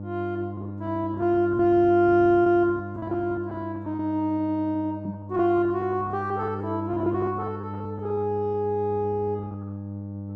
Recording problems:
electrical hum; 50 Hz, harmonics up to 800 Hz, SNR 11 dB
lost packets; 15% of the sound replaced, filled with repeated pitch periods
microphone bump; at 5 s; peak -5 dB vs average level

